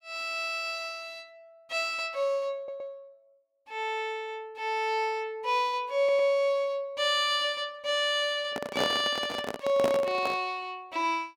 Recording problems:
audio stuttering; at 2.5 s and at 6 s
microphone handling noise; from 8.5 to 10 s; peak +3 dB vs average level

